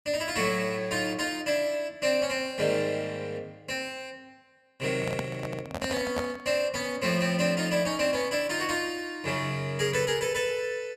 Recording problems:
handling noise; from 5 to 6.5 s; peak +1 dB vs average level

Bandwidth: 14.5 kHz